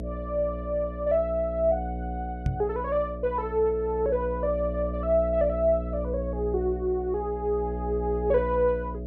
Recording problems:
hum; 60 Hz, harmonics up to 660 Hz, SNR 7 dB
microphone thump; at 2.5 s; peak +3 dB vs average level

